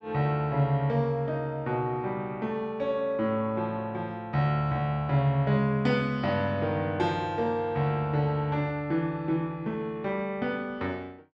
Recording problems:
none

